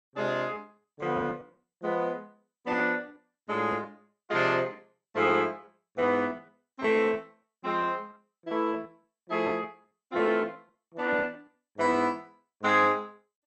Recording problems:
codec artefacts; MP2, log-spectral distance 2 dB, nothing above 6.9 kHz
lost packets; 6% of the sound replaced, filled with repeated pitch periods

